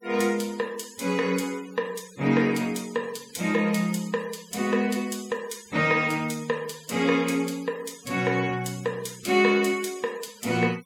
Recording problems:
noise reduction artefacts; signal-to-artefact ratio 20 dB

